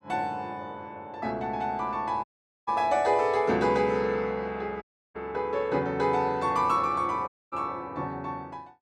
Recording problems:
dropout; at 2 s, at 5 s and at 7.5 s

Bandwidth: 13.5 kHz